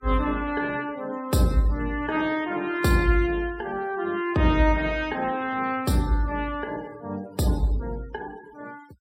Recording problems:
noise reduction artefacts; signal-to-artefact ratio 23 dB

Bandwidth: 16 kHz